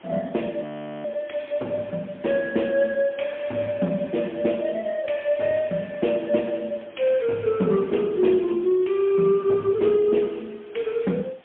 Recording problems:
telephone audio; 130 Hz to 3.5 kHz, AMR-NB, then MP3
hiss; SNR 27 dB
audio freezing; at 0.5 s

